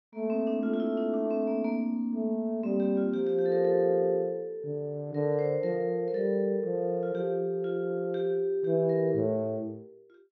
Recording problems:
low-pass filter; nothing above 6 kHz

